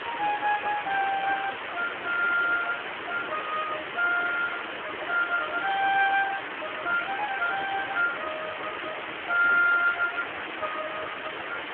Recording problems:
phone line; 280 Hz to 3 kHz, Speex
background hiss; SNR 6 dB
crackle; from 2 to 6 s and from 6.5 to 10 s; loose cable, SNR 27 dB

